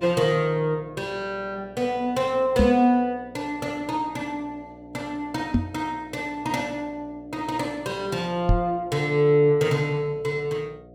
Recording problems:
hum; 60 Hz, harmonics up to 720 Hz, SNR 22 dB
knock on the microphone; at 2.5 s, at 5.5 s and at 8.5 s; peak +7 dB vs average level

